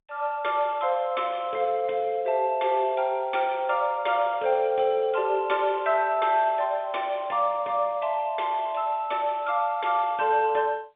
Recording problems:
telephone audio; 300 Hz to 3.7 kHz, G.711

